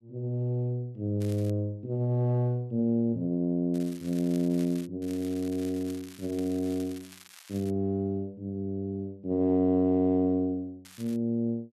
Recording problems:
crackling; 4 times, first at 1 s; loose cable, SNR 21 dB

